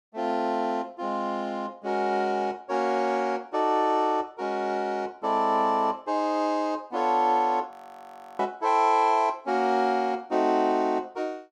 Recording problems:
frozen audio; at 7.5 s for 0.5 s

